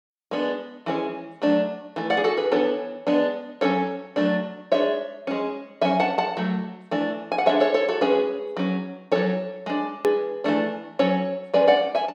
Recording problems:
hard cut with a click; at 10 s

